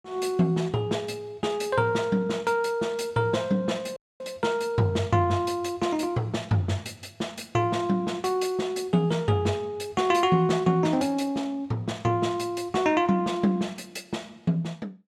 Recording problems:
dropout; at 4 s

